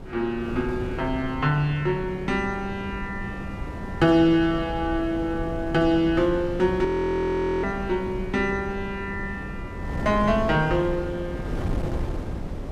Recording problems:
wind on the microphone; below 290 Hz, SNR 9 dB
frozen audio; at 7 s for 1 s

